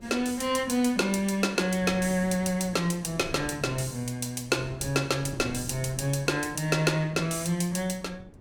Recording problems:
wind noise; below 290 Hz, SNR 18 dB

